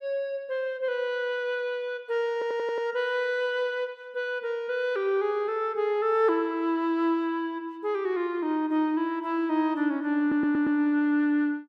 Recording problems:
audio stuttering; at 2.5 s and at 10 s

